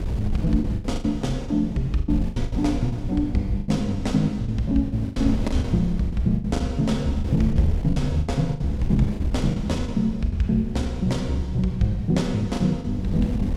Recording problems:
wind noise; below 110 Hz, SNR 8 dB
packet loss; 11% of the sound replaced, filled with the last packet

